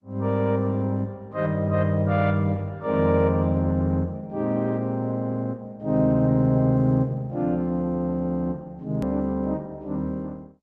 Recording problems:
lossy codec; Opus, then Opus, log-spectral distance 2 dB, nothing above 13.1 kHz
hard cut with a click; at 9 s

